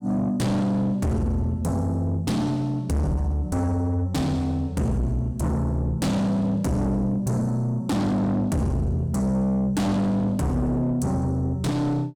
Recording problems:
distorted audio; soft clipping, signal-to-distortion ratio 7 dB

